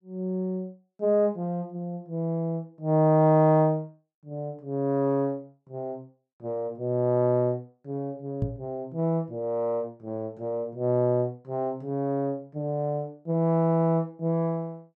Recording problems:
knock on the microphone; at 8.5 s; peak +3 dB vs average level
stutter; at 14 s

